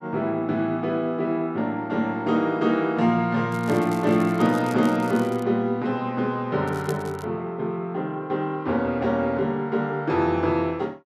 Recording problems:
crackle; from 3.5 to 5.5 s and at 6.5 s; loose cable, SNR 22 dB

